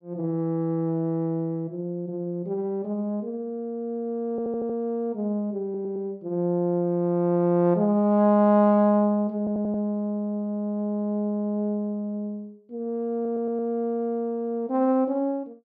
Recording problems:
audio stuttering; 4 times, first at 4.5 s

